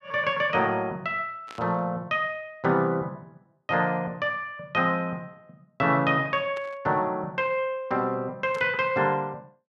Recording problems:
burst of static; at 1.5 s, at 6.5 s and at 8.5 s; peak -12 dB vs average level

